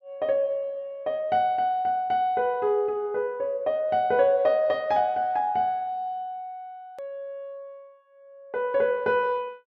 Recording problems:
hard cut with a click; at 7 s

